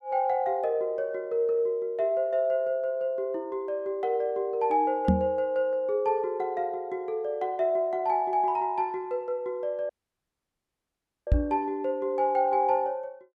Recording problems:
microphone bump; at 5 s and at 11 s; peak +8 dB vs average level
audio cutting out; at 10 s for 1.5 s

